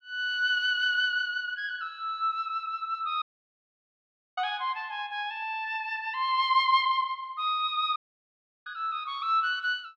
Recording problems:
audio cutting out; at 3 s for 1 s and at 8 s for 0.5 s

